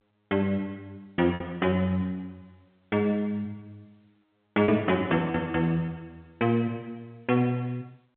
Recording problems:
phone line; 190 Hz to 3.4 kHz, G.711
packet loss; 3% of the sound replaced, filled with repeated pitch periods

